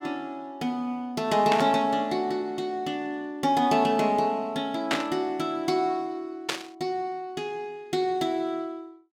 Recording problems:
burst of static; at 1.5 s, at 5 s and at 6.5 s; peak +5 dB vs average level

